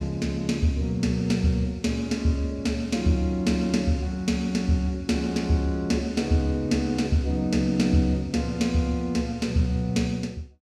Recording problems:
none

